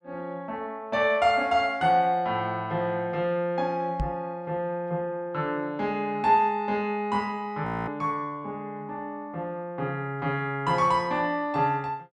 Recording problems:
microphone bump; at 4 s; peak 0 dB vs average level
frozen audio; at 7.5 s

